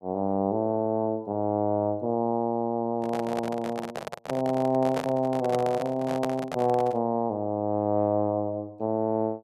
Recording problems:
microphone handling noise; from 3 to 7 s; peak 0 dB vs average level

